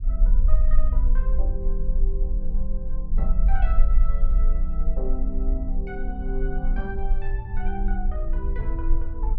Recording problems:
low-frequency rumble; below 40 Hz, strongest tone 18 Hz, SNR -9 dB

